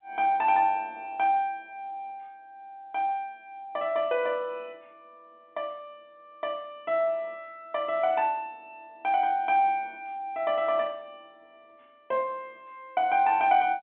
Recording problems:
telephone audio; 150 Hz to 3.6 kHz, G.711

